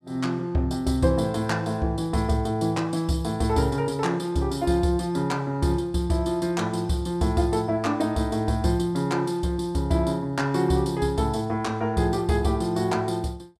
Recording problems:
none

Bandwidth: 14.5 kHz